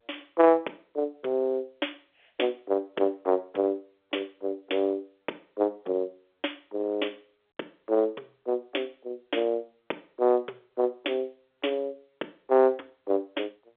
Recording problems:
phone line; 300 Hz to 3.5 kHz, G.711

